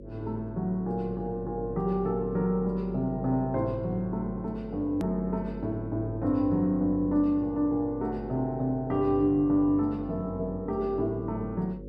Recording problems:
electrical hum; 50 Hz, harmonics up to 550 Hz, SNR 13 dB
hard cut with a click; at 5 s

